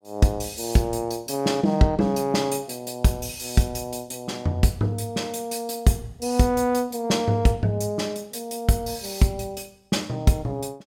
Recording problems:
none

